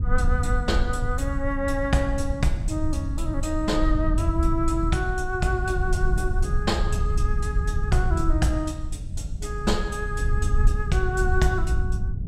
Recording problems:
rumble; below 78 Hz, SNR 0 dB

